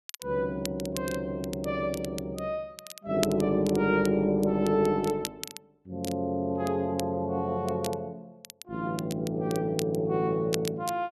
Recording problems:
crackle; vinyl, SNR 14 dB

